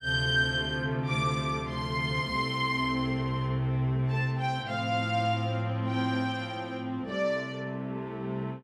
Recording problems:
none

